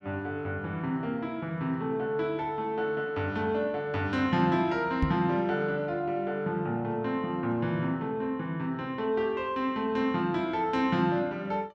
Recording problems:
microphone bump; at 5 s; peak +5 dB vs average level

